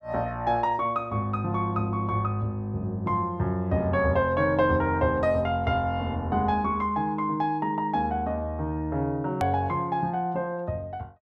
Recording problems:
hard cut with a click; at 9.5 s

